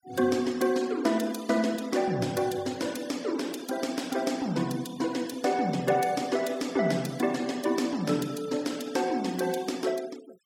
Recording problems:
denoising artefacts; signal-to-artefact ratio 18 dB

